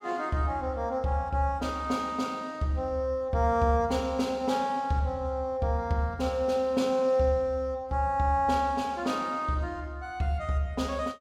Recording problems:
none

